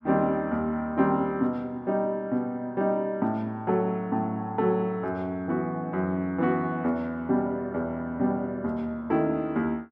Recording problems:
none

